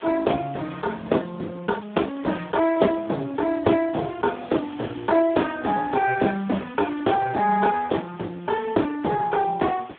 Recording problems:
telephone audio; 240 Hz to 3.6 kHz, Speex
hiss; SNR 23 dB

